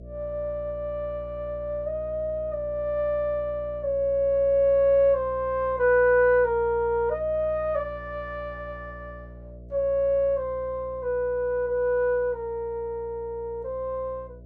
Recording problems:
electrical hum; 60 Hz, harmonics up to 660 Hz, SNR 18 dB

